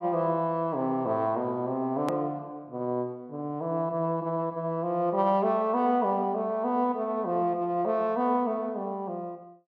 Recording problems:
edit click; at 2 s

